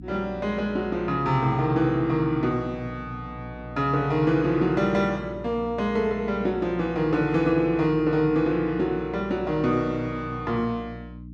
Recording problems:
hum; 60 Hz, harmonics up to 300 Hz, SNR 16 dB

